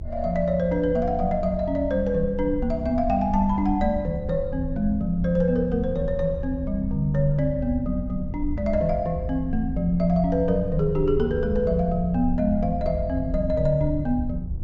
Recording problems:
treble cut off; nothing above 8 kHz
hum; 50 Hz, harmonics up to 700 Hz, SNR 19 dB
rumble; below 72 Hz, strongest tone 22 Hz, SNR 9 dB

